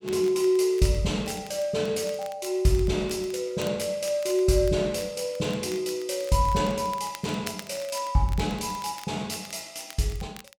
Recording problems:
crackling; vinyl, SNR 20 dB

